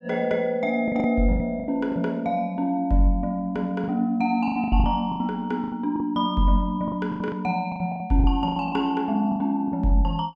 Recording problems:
lost packets; 13% of the sound replaced, filled with the last packet

